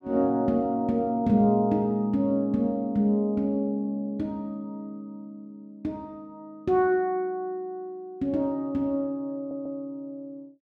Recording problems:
audio stuttering; at 9.5 s

